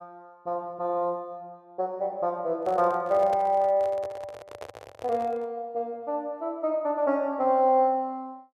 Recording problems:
microphone handling noise; from 2.5 to 5.5 s; peak -7 dB vs average level

